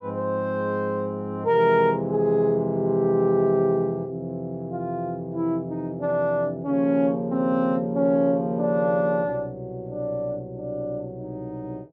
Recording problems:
none

